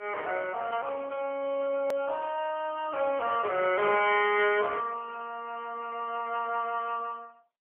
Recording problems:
phone line; 260 Hz to 3.1 kHz, AMR-NB
click at an edit; at 2 s

